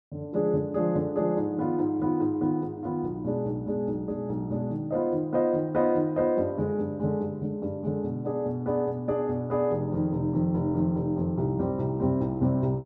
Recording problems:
none

